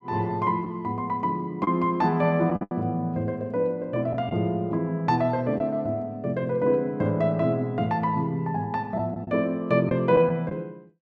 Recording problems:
lost packets; 3% of the sound replaced, filled with the last packet

